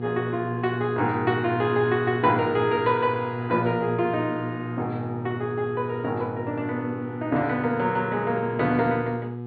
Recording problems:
treble cut off; nothing above 4.6 kHz
electrical hum; 60 Hz, harmonics up to 840 Hz, SNR 7 dB

